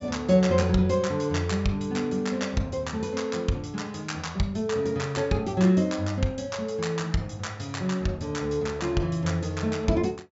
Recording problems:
treble cut off; nothing above 8 kHz

